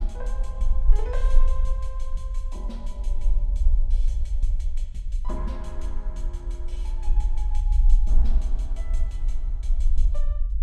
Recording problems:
rumble; below 44 Hz, strongest tone 24 Hz, SNR -15 dB

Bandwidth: 14 kHz